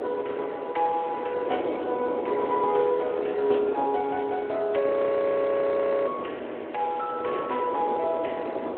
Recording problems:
telephone audio; 280 Hz to 3.3 kHz, Speex
background hiss; SNR 27 dB
wind on the microphone; below 610 Hz, SNR 7 dB
audio freezing; at 5 s for 1 s

